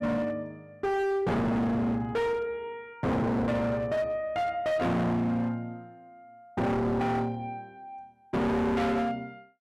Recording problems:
distortion; hard clipping, signal-to-distortion ratio 6 dB

